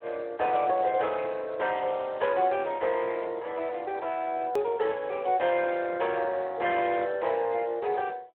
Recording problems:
telephone audio; 340 Hz to 3.7 kHz, Speex
hard cut with a click; at 4.5 s

